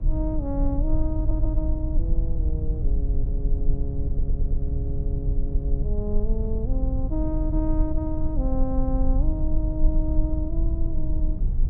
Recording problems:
low-frequency rumble; below 56 Hz, SNR -6 dB
wind noise; below 260 Hz, SNR 18 dB
audio stuttering; at 1 s and at 4 s

